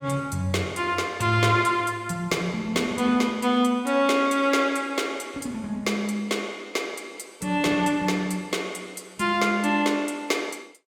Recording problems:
none

